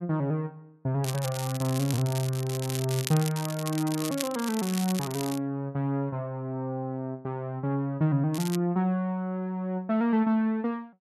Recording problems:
crackle; from 1 to 5.5 s and at 8.5 s; loose cable, SNR 9 dB

